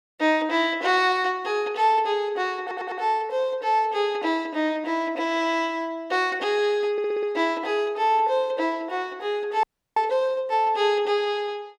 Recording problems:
audio stuttering; at 2.5 s and at 7 s
frozen audio; at 9.5 s

